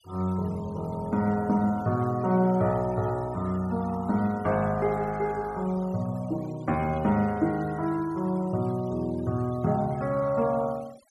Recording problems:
noise reduction artefacts; signal-to-artefact ratio 23 dB

